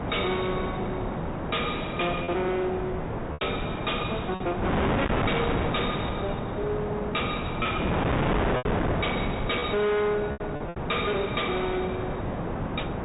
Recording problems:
low-pass filter; nothing above 4 kHz
distortion; hard clipping, signal-to-distortion ratio 6 dB
wind noise; below 860 Hz, SNR 0 dB
packet loss; 3% of the sound replaced, filled with repeated pitch periods

